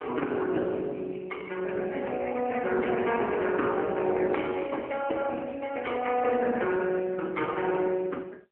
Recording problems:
phone line; 260 Hz to 3.2 kHz, AMR-NB

